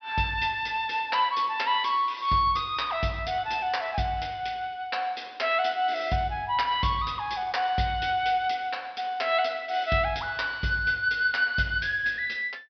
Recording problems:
low-pass filter; nothing above 5.5 kHz

